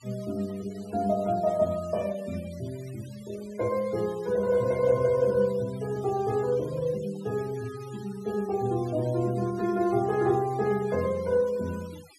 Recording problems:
noise reduction artefacts; signal-to-artefact ratio 22 dB

